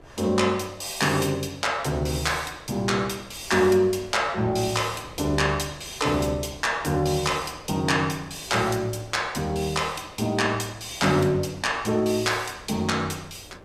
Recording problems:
wind on the microphone; below 700 Hz, SNR 23 dB

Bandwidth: 15.5 kHz